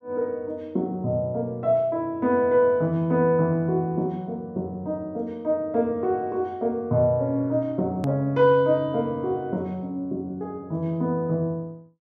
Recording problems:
edit click; at 8 s

